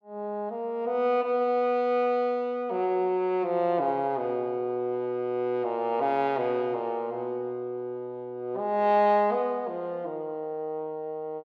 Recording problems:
none

